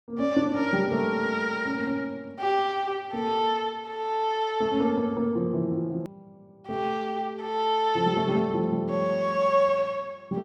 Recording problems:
edit click; at 6 s

